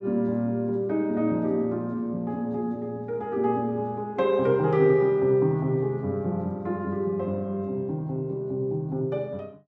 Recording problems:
none

